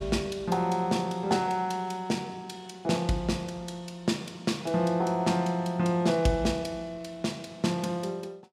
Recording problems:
none

